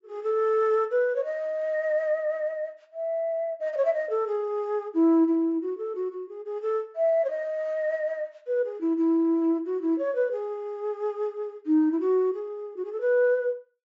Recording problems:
low-pass filter; nothing above 8 kHz

